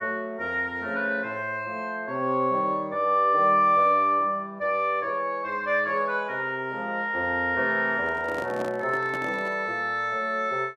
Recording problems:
microphone handling noise; from 8 to 9.5 s; peak -7 dB vs average level

